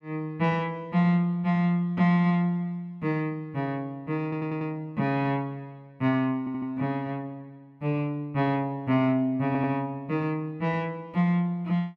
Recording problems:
stutter; at 4 s, at 6.5 s and at 9.5 s

